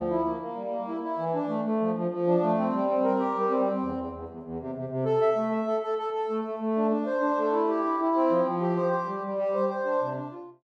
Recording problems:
none

